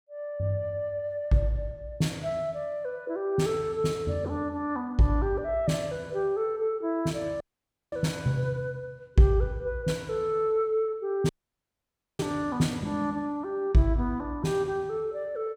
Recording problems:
audio cutting out; at 7.5 s for 0.5 s and at 11 s for 1 s

